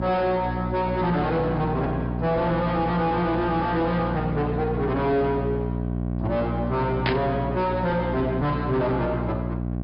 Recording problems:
low-pass filter; nothing above 5.5 kHz
distortion; soft clipping, signal-to-distortion ratio 7 dB
electrical hum; 60 Hz, harmonics up to 780 Hz, SNR 3 dB
burst of static; at 7 s; peak +3 dB vs average level

